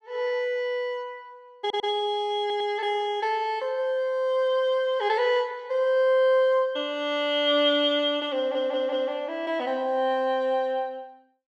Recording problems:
stutter; at 1.5 s, at 2.5 s and at 8.5 s

